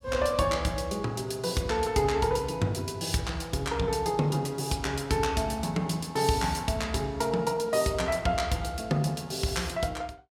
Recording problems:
none

